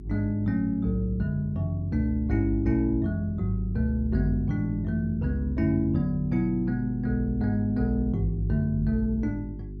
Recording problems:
hum; 50 Hz, harmonics up to 400 Hz, SNR 13 dB

